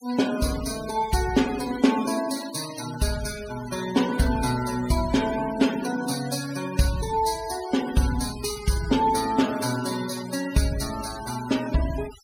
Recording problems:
denoising artefacts; signal-to-artefact ratio 13 dB

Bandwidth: 16 kHz